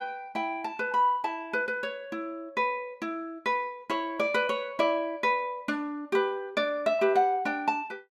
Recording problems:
none

